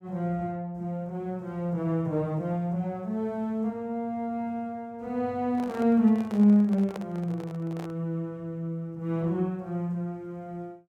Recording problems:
handling noise; from 5.5 to 8 s; peak -6 dB vs average level

